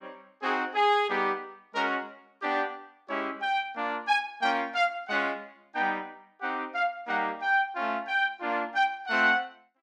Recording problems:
none

